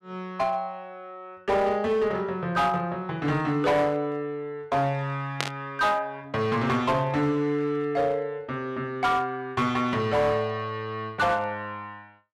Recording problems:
distorted audio; hard clipping, uneven, signal-to-distortion ratio 11 dB
static burst; at 5.5 s; peak +3 dB vs average level

